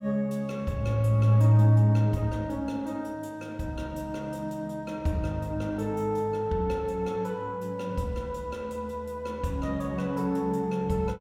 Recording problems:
none

